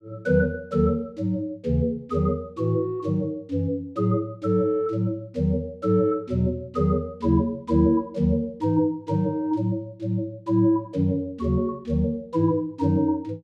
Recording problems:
none

